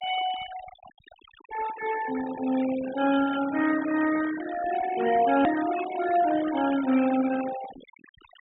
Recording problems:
treble cut off; nothing above 4 kHz
denoising artefacts; signal-to-artefact ratio 13 dB
click at an edit; at 5.5 s

